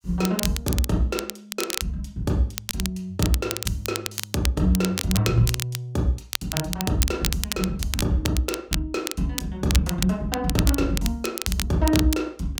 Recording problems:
crackling; vinyl, SNR 5 dB

